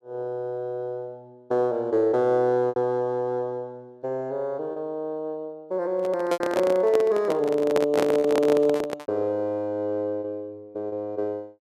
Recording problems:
packet loss; 4% of the sound replaced, filled with repeated pitch periods
handling noise; from 6 to 9 s; peak +4 dB vs average level

